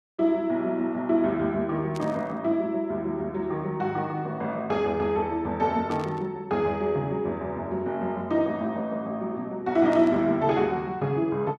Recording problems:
static burst; at 2 s, at 6 s and at 10 s; peak -11 dB vs average level

